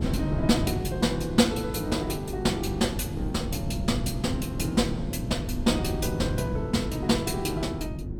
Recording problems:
electrical hum; 50 Hz, harmonics up to 350 Hz, SNR 10 dB
wind noise; below 210 Hz, SNR 6 dB

